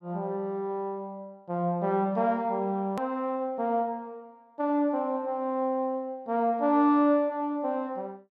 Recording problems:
hard cut with a click; at 3 s

